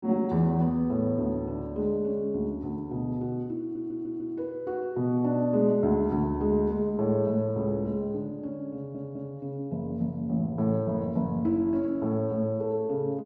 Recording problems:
audio stuttering; at 3.5 s and at 8.5 s

